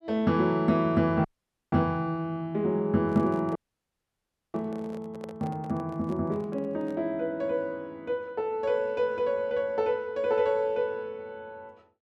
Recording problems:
dropout; at 1.5 s and at 3.5 s for 1 s
microphone handling noise; from 3 to 7 s; peak -9 dB vs average level

